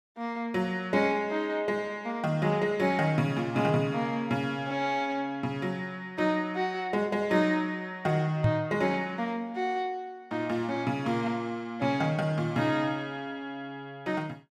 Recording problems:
microphone bump; at 8.5 s; peak +7 dB vs average level

